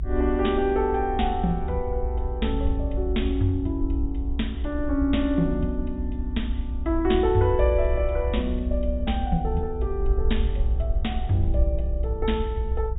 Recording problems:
treble missing; nothing above 4 kHz
rumble; below 62 Hz, SNR 3 dB

